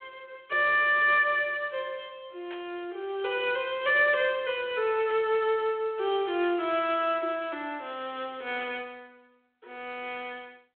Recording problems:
telephone audio; 300 Hz to 3.4 kHz, G.726
burst of static; 4 times, first at 2.5 s; peak -13 dB vs average level

